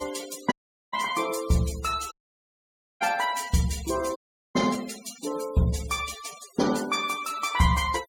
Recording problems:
denoising artefacts; signal-to-artefact ratio 14 dB
dropout; at 0.5 s, at 2 s for 1 s and at 4 s

